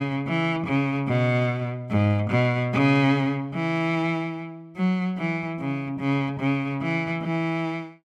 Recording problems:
none

